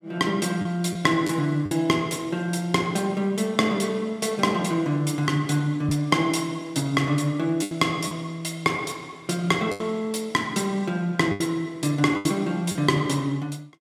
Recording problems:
packet loss; 4% of the sound replaced, filled with the last packet

